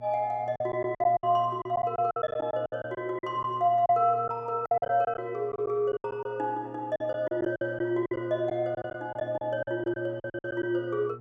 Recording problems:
hum; 60 Hz, harmonics up to 840 Hz, SNR 18 dB
lost packets; 13% of the sound replaced, filled with silence

